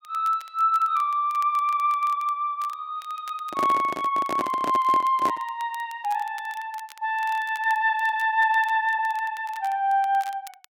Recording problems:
crackle; vinyl, SNR 25 dB
microphone handling noise; from 3.5 to 5.5 s; peak -2 dB vs average level

